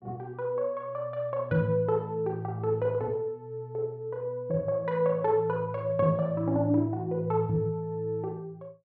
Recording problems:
none

